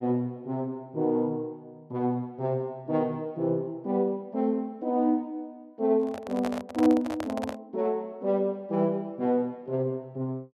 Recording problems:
microphone handling noise; from 6 to 7.5 s; peak -1 dB vs average level

